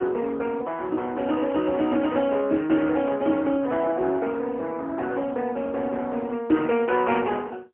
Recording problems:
telephone audio; 190 Hz to 3.1 kHz, AMR-NB, then MP3

